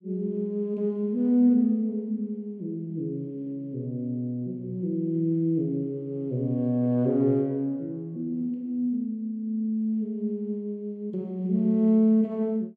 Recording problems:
none

